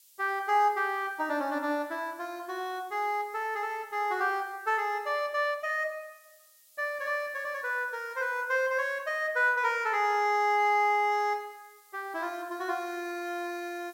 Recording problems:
background hiss; SNR 27 dB

